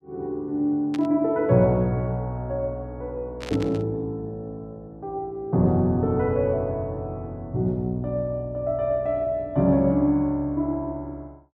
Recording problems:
burst of static; at 1 s and at 3.5 s; peak -8 dB vs average level

